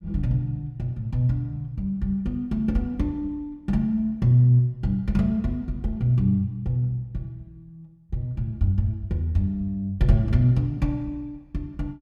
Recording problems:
none

